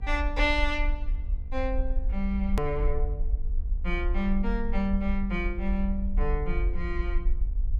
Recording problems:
electrical hum; 50 Hz, harmonics up to 950 Hz, SNR 21 dB
low-frequency rumble; below 50 Hz, SNR 1 dB
click at an edit; at 2.5 s

